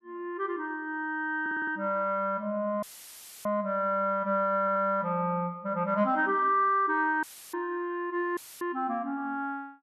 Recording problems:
stutter; at 1.5 s and at 4.5 s
audio cutting out; at 3 s for 0.5 s, at 7 s and at 8.5 s; filled with static

